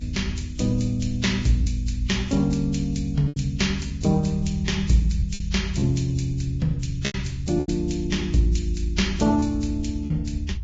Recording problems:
lossy compression; Vorbis, log-spectral distance 3 dB, nothing above 7.3 kHz
rumble; below 80 Hz, SNR 9 dB
lost packets; 4% of the sound replaced, filled with repeated pitch periods

